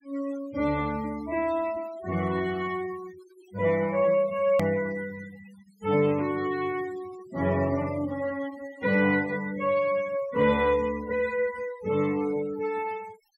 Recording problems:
denoising artefacts; signal-to-artefact ratio 19 dB
hard cut with a click; at 4.5 s

